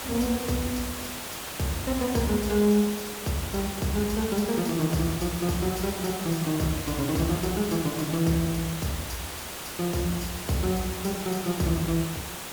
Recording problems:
hiss; slope -2 dB per octave, SNR 7 dB

